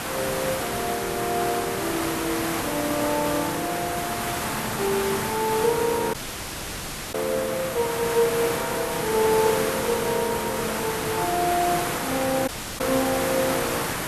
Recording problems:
hiss; slope -4 dB per octave, SNR 2 dB
dropout; at 6 s for 1 s and at 12 s

